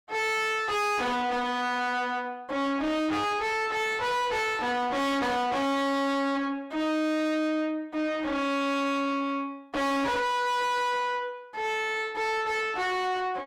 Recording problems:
distortion; soft clipping, signal-to-distortion ratio 5 dB

